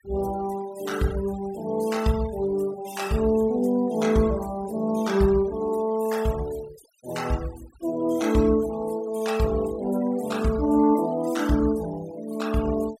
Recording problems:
noise reduction artefacts; signal-to-artefact ratio 19 dB

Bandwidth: 16 kHz